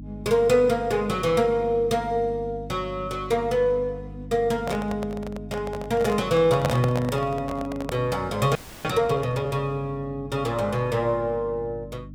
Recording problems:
hum; 50 Hz, harmonics up to 300 Hz, SNR 15 dB
microphone handling noise; from 4.5 to 8 s; peak +3 dB vs average level
audio freezing; at 8.5 s

